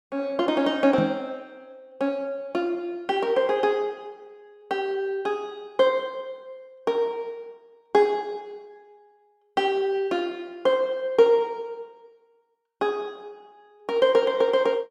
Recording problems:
microphone thump; at 1 s; peak +1 dB vs average level

